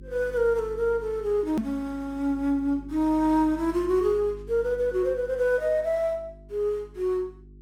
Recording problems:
hum; 50 Hz, harmonics up to 400 Hz, SNR 19 dB
click at an edit; at 1.5 s

